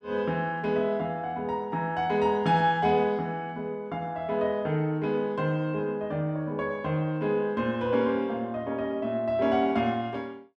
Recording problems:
none

